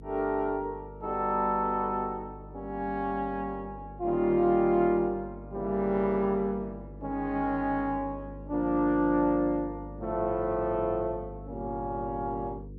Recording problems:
mains hum; 50 Hz, harmonics up to 500 Hz, SNR 16 dB

